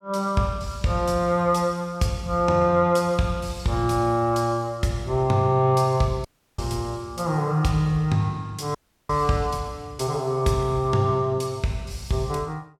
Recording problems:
dropout; at 6.5 s and at 9 s

